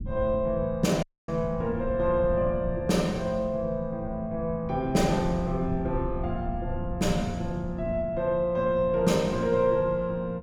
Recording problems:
rumble; below 130 Hz, SNR 11 dB
audio cutting out; at 1 s

